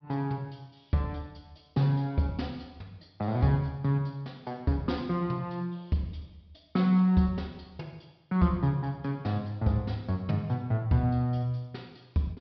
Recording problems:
treble cut off; nothing above 5.5 kHz

